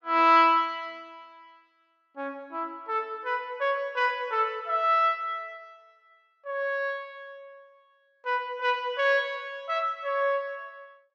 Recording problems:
none

